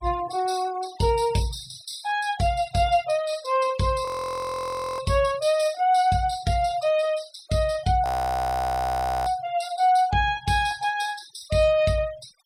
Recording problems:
denoising artefacts; signal-to-artefact ratio 20 dB
frozen audio; at 4 s for 1 s and at 8 s for 1 s

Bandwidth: 16 kHz